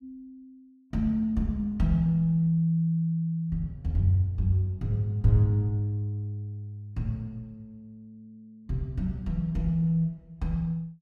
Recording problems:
none

